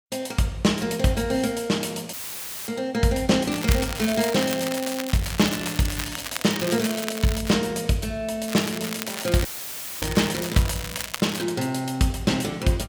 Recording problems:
audio cutting out; at 2 s for 0.5 s and at 9.5 s for 0.5 s; filled with static
crackle; from 3.5 to 7.5 s and from 8.5 to 11 s; loose cable, SNR 8 dB

